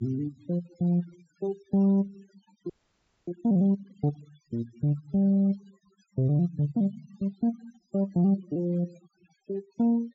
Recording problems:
treble cut off; nothing above 8 kHz
noise reduction artefacts; signal-to-artefact ratio 24 dB
audio freezing; at 2.5 s for 0.5 s

